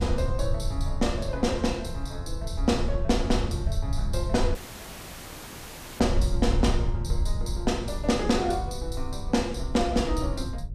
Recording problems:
electrical hum; 60 Hz, harmonics up to 660 Hz, SNR 22 dB
rumble; below 82 Hz, SNR 3 dB
audio cutting out; at 4.5 s for 1.5 s

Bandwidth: 14.5 kHz